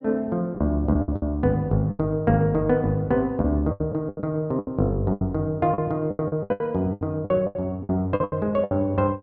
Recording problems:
lost packets; 15% of the sound replaced, filled with the last packet

